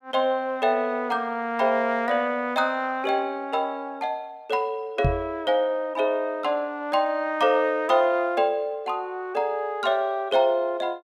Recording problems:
microphone thump; at 5 s; peak +4 dB vs average level

